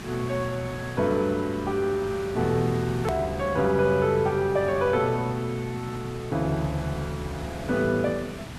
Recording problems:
background hiss; slope -4 dB per octave, SNR 13 dB
click at an edit; at 3 s

